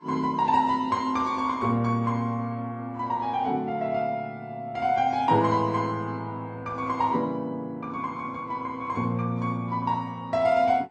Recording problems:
codec artefacts; MP2, then Vorbis, log-spectral distance 2 dB

